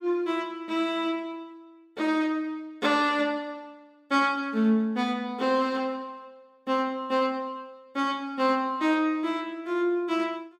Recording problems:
none

